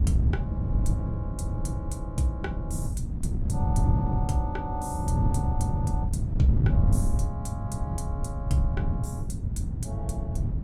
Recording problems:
wind on the microphone; below 140 Hz, SNR -6 dB

